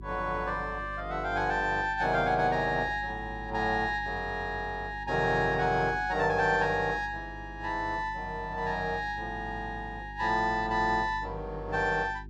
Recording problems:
hum; 50 Hz, harmonics up to 400 Hz, SNR 15 dB

